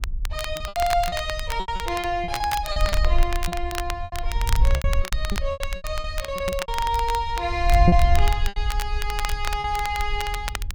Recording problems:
wind noise; below 60 Hz, SNR 1 dB
crackle; vinyl, SNR 8 dB
lost packets; 14% of the sound replaced, filled with repeated pitch periods

